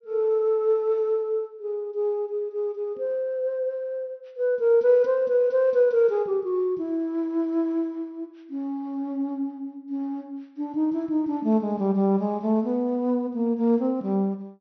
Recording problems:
treble cut off; nothing above 6 kHz

